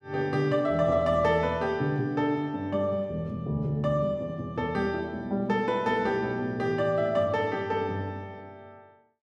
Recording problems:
none

